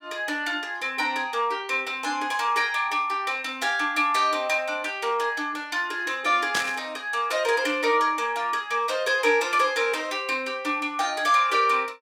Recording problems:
static burst; at 6.5 s; peak +1 dB vs average level

